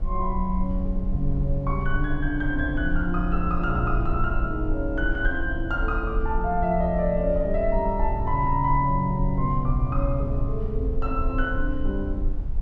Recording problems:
rumble; below 54 Hz, SNR 4 dB

